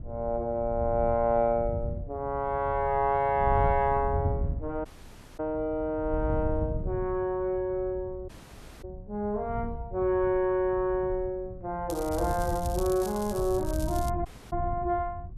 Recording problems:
wind on the microphone; below 110 Hz, SNR 8 dB
dropout; at 5 s for 0.5 s, at 8.5 s for 0.5 s and at 14 s
crackle; from 12 to 14 s; loose cable, SNR 15 dB

